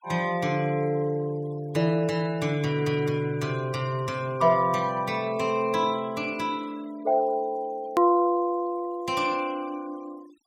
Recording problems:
noise reduction artefacts; signal-to-artefact ratio 24 dB
click at an edit; at 8 s

